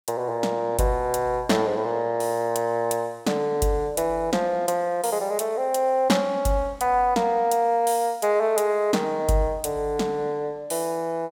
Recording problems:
none

